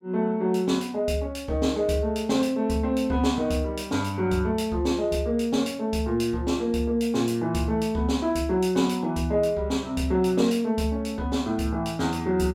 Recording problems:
none

